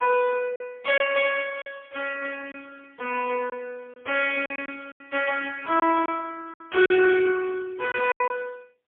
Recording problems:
phone line; 300 Hz to 3.3 kHz, AMR-NB, then MP3
packet loss; 7% of the sound replaced, filled with silence
crackle; from 1.5 to 5.5 s and at 7.5 s; loose cable, SNR 41 dB

